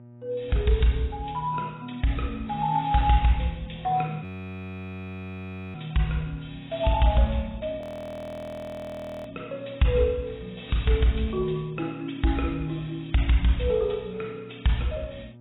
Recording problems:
codec artefacts; AAC, log-spectral distance 6 dB, nothing above 3.5 kHz
hum; 60 Hz, harmonics up to 960 Hz, SNR 20 dB
frozen audio; at 4 s for 1.5 s and at 8 s for 1.5 s

